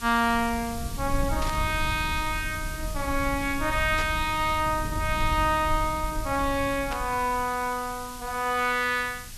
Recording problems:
hiss; slope +4 dB per octave, SNR 14 dB
low-frequency rumble; below 94 Hz, SNR 9 dB
static burst; at 1.5 s, at 4 s and at 7 s; peak -5 dB vs average level

